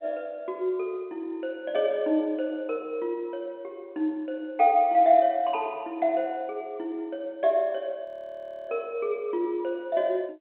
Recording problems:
telephone audio; 190 Hz to 3.8 kHz, G.711
audio freezing; at 8 s for 0.5 s

